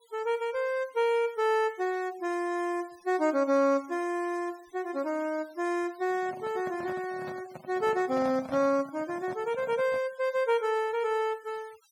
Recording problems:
noise reduction artefacts; signal-to-artefact ratio 24 dB
microphone handling noise; from 6 to 10 s; peak -7 dB vs average level

